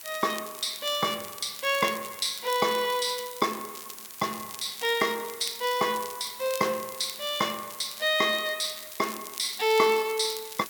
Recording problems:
background hiss; slope 0 dB per octave, SNR 14 dB
crackle; vinyl, SNR 15 dB

